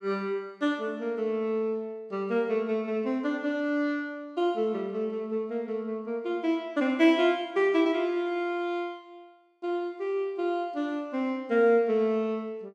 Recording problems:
none

